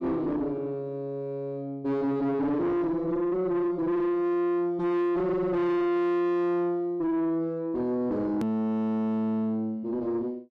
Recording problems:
distortion; soft clipping, signal-to-distortion ratio 7 dB
click at an edit; at 8.5 s

